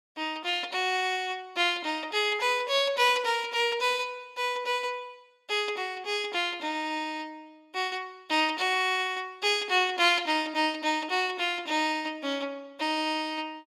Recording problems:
none

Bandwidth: 16.5 kHz